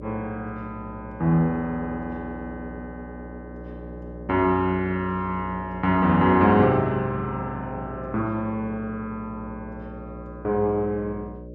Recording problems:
electrical hum; 60 Hz, harmonics up to 600 Hz, SNR 15 dB

